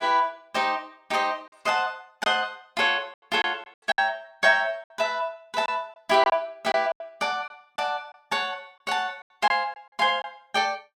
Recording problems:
lost packets; 6% of the sound replaced, filled with silence

